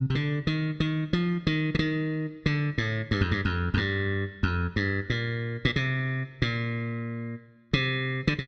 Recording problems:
none

